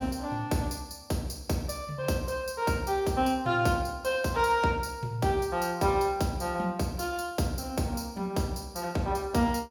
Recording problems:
none

